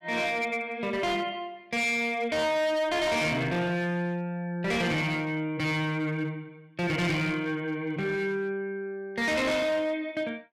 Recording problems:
distorted audio; hard clipping, signal-to-distortion ratio 7 dB

